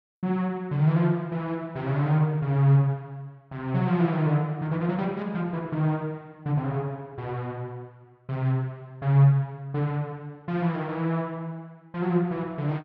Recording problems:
none

